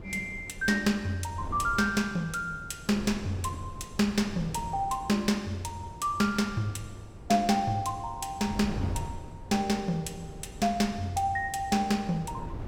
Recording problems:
wind noise; below 250 Hz, SNR 14 dB

